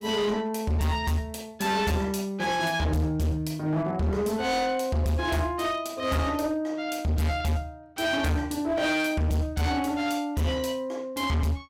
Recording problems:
distortion; hard clipping, signal-to-distortion ratio 7 dB

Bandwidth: 16 kHz